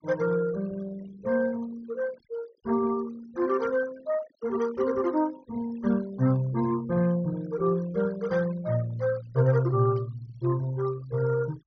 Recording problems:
treble cut off; nothing above 6.2 kHz
denoising artefacts; signal-to-artefact ratio 20 dB
static burst; at 10 s; peak -25 dB vs average level

